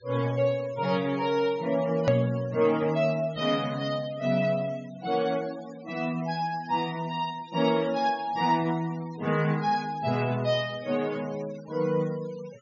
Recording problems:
treble missing; nothing above 6.8 kHz
denoising artefacts; signal-to-artefact ratio 21 dB
hard cut with a click; at 2 s

